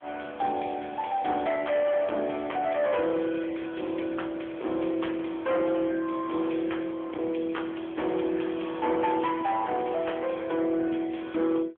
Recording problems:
telephone audio; 220 Hz to 3.3 kHz, AMR-NB
distorted audio; hard clipping, uneven, signal-to-distortion ratio 10 dB

